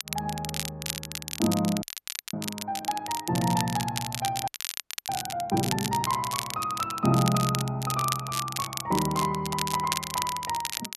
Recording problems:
crackle; vinyl, SNR 5 dB
frozen audio; at 2 s for 0.5 s and at 4.5 s for 0.5 s

